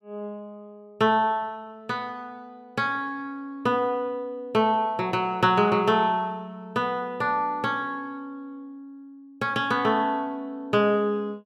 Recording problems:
none

